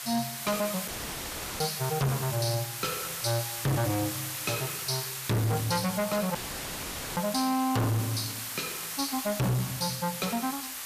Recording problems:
distorted audio; hard clipping, uneven, signal-to-distortion ratio 6 dB
background hiss; slope +2 dB per octave, SNR 5 dB
audio cutting out; at 1 s for 0.5 s and at 6.5 s for 1 s; filled with static

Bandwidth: 14.5 kHz